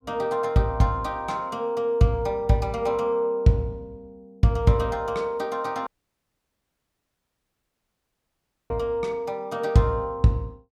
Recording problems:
dropout; at 6 s for 3 s

